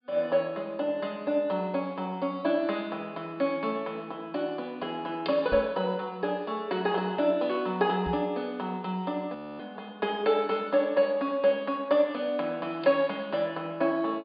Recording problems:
treble cut off; nothing above 5.1 kHz
knock on the microphone; at 5.5 s and at 8 s; peak -2 dB vs average level
audio freezing; at 9.5 s

